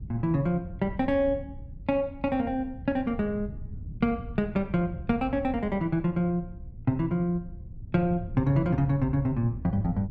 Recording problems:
wind on the microphone; below 120 Hz, SNR 13 dB

